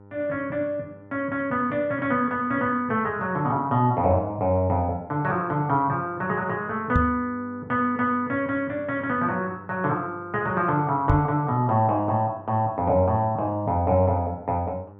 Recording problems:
hum; 50 Hz, harmonics up to 1.4 kHz, SNR 23 dB
microphone bump; at 7 s and at 11 s; peak +5 dB vs average level

